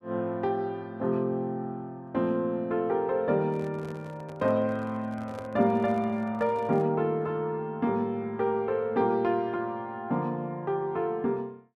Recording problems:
handling noise; from 3.5 to 7 s; peak -10 dB vs average level

